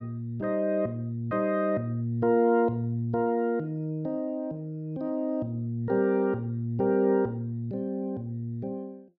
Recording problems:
none

